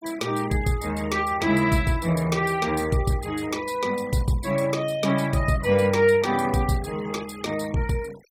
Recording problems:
noise reduction artefacts; signal-to-artefact ratio 21 dB

